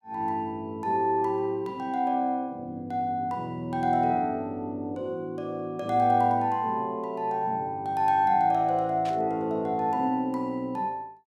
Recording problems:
burst of static; at 9 s; peak -11 dB vs average level

